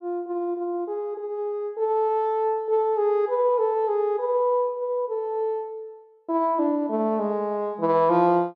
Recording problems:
none

